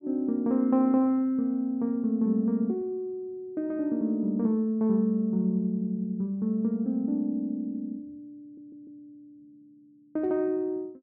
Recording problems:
audio stuttering; at 8.5 s

